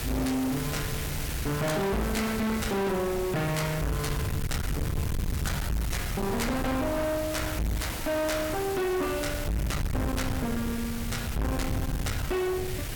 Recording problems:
distorted audio; soft clipping, signal-to-distortion ratio 6 dB
hiss; SNR 7 dB
low-frequency rumble; below 160 Hz, SNR 5 dB

